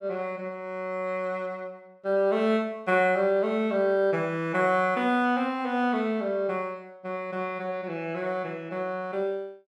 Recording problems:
none

